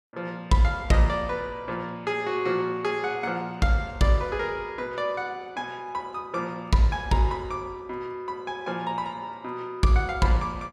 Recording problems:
none

